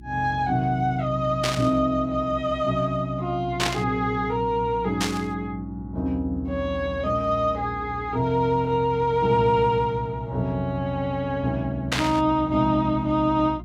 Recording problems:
hum; 60 Hz, harmonics up to 360 Hz, SNR 17 dB
static burst; 4 times, first at 1.5 s; peak +3 dB vs average level

